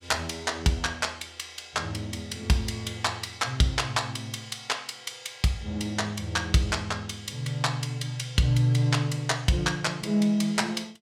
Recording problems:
none

